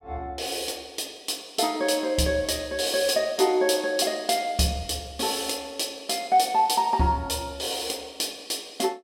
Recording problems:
none

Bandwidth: 16.5 kHz